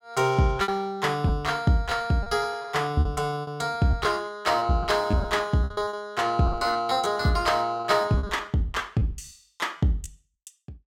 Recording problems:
lost packets; 13% of the sound replaced, filled with repeated pitch periods

